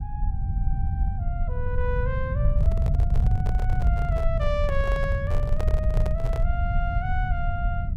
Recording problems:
rumble; below 88 Hz, SNR -7 dB
microphone handling noise; from 2.5 to 6.5 s; peak +2 dB vs average level

